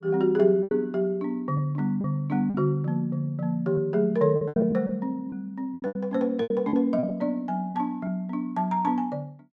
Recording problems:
lost packets; 8% of the sound replaced, filled with repeated pitch periods

